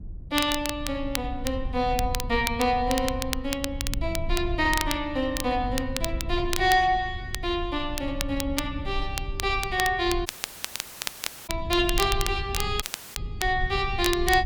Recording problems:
rumble; below 78 Hz, SNR 9 dB
crackle; vinyl, SNR 7 dB
dropout; at 10 s for 1 s and at 13 s

